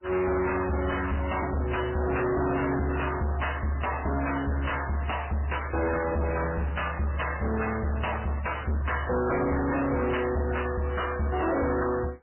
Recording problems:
codec artefacts; MP3, then MP3, log-spectral distance 7 dB, nothing above 3 kHz
distorted audio; hard clipping, signal-to-distortion ratio 6 dB

